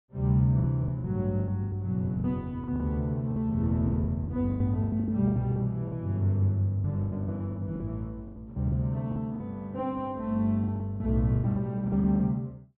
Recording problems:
treble missing; nothing above 4 kHz
packet loss; 15% of the sound replaced, filled with the last packet

